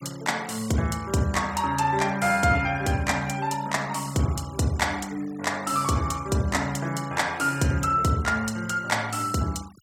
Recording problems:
noise reduction artefacts; signal-to-artefact ratio 20 dB

